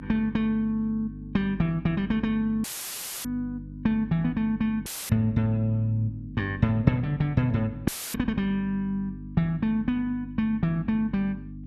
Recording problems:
hum; 50 Hz, harmonics up to 300 Hz, SNR 13 dB
audio cutting out; at 2.5 s for 0.5 s, at 5 s and at 8 s; filled with static

